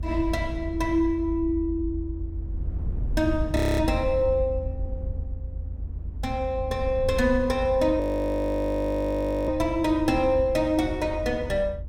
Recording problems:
rumble; below 82 Hz, SNR 7 dB
audio freezing; at 3.5 s and at 8 s for 1.5 s

